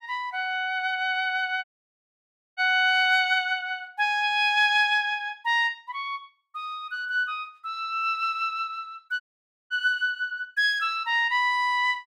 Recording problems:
dropout; at 1.5 s for 1 s and at 9 s for 0.5 s

